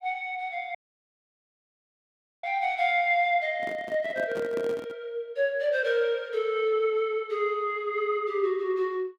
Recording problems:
audio cutting out; at 1 s for 1.5 s
microphone handling noise; from 3.5 to 5 s; peak -5 dB vs average level

